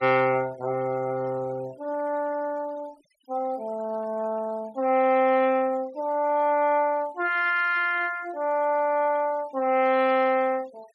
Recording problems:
denoising artefacts; signal-to-artefact ratio 26 dB

